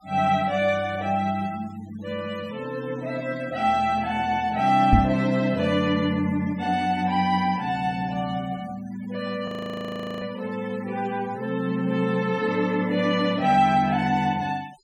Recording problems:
denoising artefacts; signal-to-artefact ratio 22 dB
microphone bump; at 5 s; peak +9 dB vs average level
audio freezing; at 9.5 s for 0.5 s

